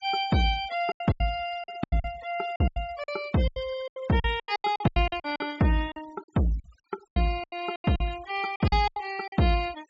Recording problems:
treble missing; nothing above 8 kHz
noise reduction artefacts; signal-to-artefact ratio 20 dB
packet loss; 17% of the sound replaced, filled with silence

